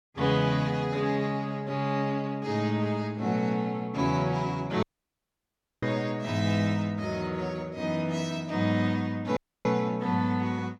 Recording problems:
audio cutting out; at 5 s for 1 s and at 9.5 s

